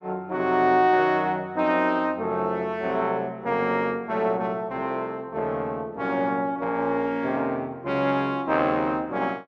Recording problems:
none

